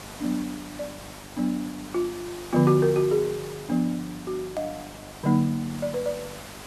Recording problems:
electrical hum; 50 Hz, harmonics up to 1.4 kHz, SNR 21 dB
background hiss; SNR 15 dB
click at an edit; at 4.5 s

